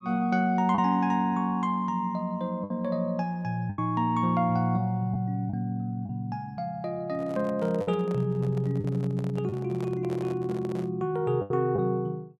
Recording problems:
packet loss; 4% of the sound replaced, filled with the last packet
handling noise; from 7 to 11 s; peak -9 dB vs average level

